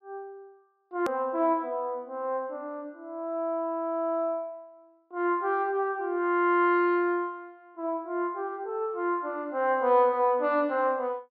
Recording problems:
treble cut off; nothing above 5.3 kHz
click at an edit; at 1 s

